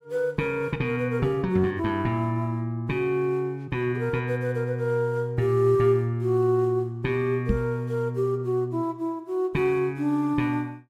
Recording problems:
microphone bump; at 7.5 s; peak +4 dB vs average level

